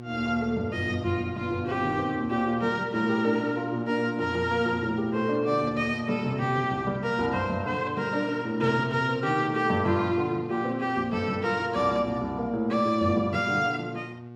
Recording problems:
electrical hum; 60 Hz, harmonics up to 1.2 kHz, SNR 14 dB

